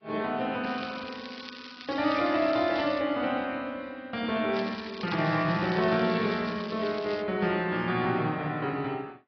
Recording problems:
treble missing; nothing above 4.9 kHz
codec artefacts; AAC, log-spectral distance 7 dB
crackling; from 0.5 to 3 s and from 4.5 to 7 s; loose cable, SNR 15 dB

